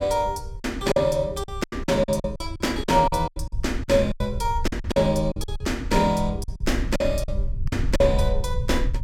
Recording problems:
low-frequency rumble; below 80 Hz, SNR 7 dB
packet loss; 13% of the sound replaced, filled with silence

